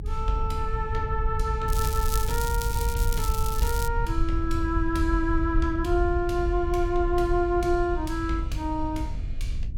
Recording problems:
rumble; below 72 Hz, SNR 6 dB
wind on the microphone; below 68 Hz, SNR 5 dB
crackle; from 1.5 to 4 s; loose cable, SNR 8 dB

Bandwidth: 17 kHz